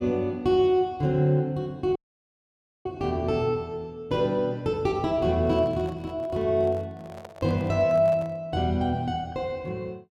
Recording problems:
dropout; at 2 s for 1 s
handling noise; from 5.5 to 8.5 s; peak -12 dB vs average level

